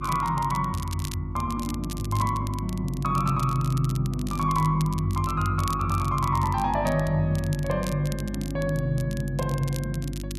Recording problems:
electrical hum; 50 Hz, harmonics up to 350 Hz, SNR 7 dB
crackling; vinyl, SNR 16 dB

